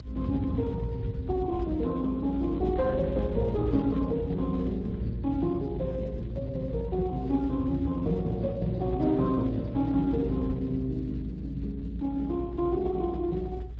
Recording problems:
lossy compression; Speex, log-spectral distance 2 dB
low-frequency rumble; below 100 Hz, strongest tone 58 Hz, SNR 9 dB
wind on the microphone; below 150 Hz, SNR 15 dB

